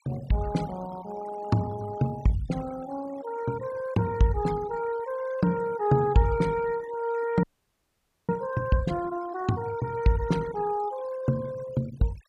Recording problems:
noise reduction artefacts; signal-to-artefact ratio 18 dB
frozen audio; at 7.5 s for 1 s

